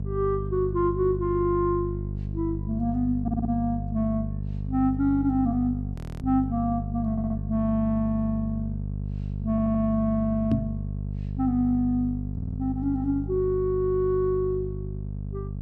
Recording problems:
hum; 50 Hz, harmonics up to 450 Hz, SNR 6 dB
stutter; 4 times, first at 3 s
audio freezing; at 6 s
microphone bump; at 11 s; peak +4 dB vs average level

